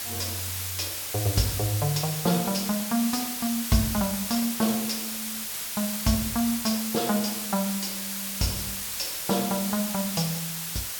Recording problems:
hiss; slope +2 dB per octave, SNR 2 dB

